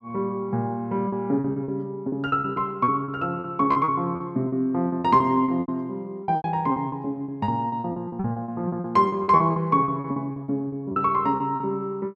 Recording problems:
lost packets; 17% of the sound replaced, filled with repeated pitch periods

